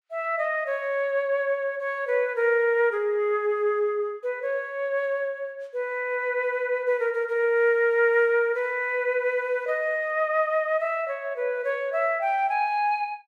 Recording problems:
none

